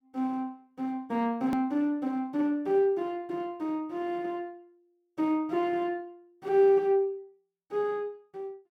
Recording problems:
hard cut with a click; at 1.5 s

